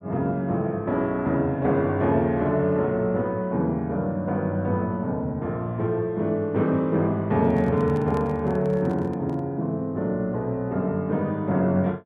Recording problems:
handling noise; from 7.5 to 9.5 s; peak -10 dB vs average level

